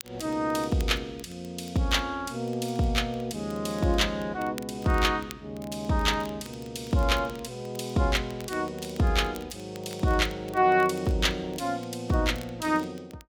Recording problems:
crackling; vinyl, SNR 23 dB

